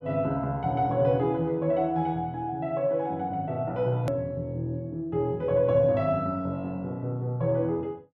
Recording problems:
edit click; at 4 s

